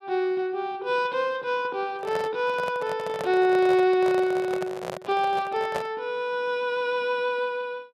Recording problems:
handling noise; from 2 to 6 s; peak -2 dB vs average level

